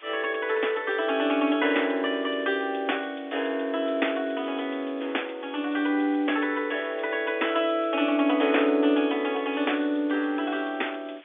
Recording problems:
telephone audio; 240 Hz to 3.6 kHz, G.711
hiss; SNR 24 dB

